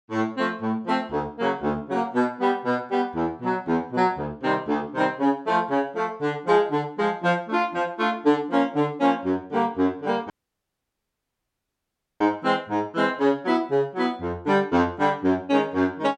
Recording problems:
dropout; at 10 s for 2 s

